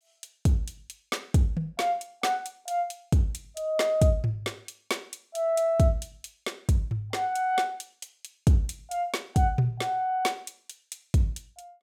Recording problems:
none

